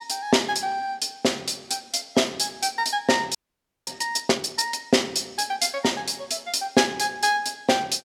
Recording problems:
frozen audio; at 3.5 s for 0.5 s

